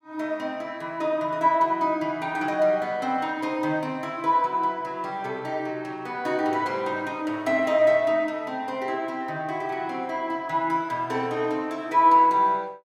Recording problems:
none

